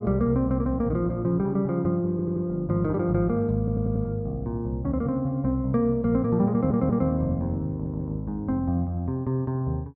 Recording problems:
stutter; 4 times, first at 2 s

